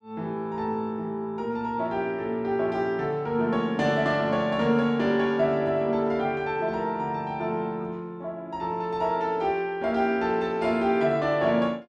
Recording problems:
none

